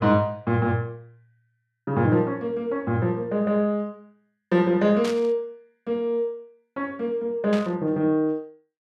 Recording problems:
static burst; at 5 s and at 7.5 s; peak -6 dB vs average level

